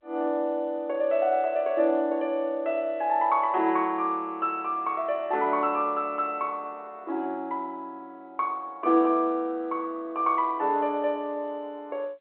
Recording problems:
phone line; 300 Hz to 3.3 kHz, G.711

